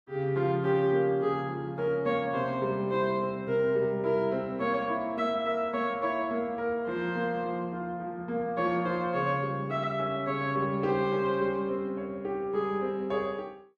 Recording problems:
none

